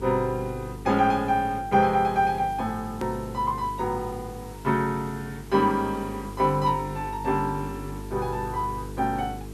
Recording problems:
hum; 50 Hz, harmonics up to 450 Hz, SNR 13 dB
background hiss; SNR 23 dB
edit click; at 3 s

